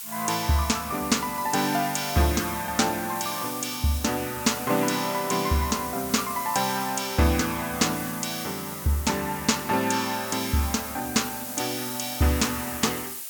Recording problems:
hiss; slope +3 dB per octave, SNR 8 dB

